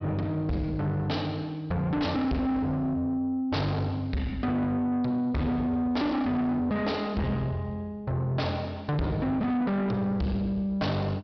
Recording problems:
treble cut off; nothing above 5.5 kHz
distorted audio; soft clipping, signal-to-distortion ratio 7 dB

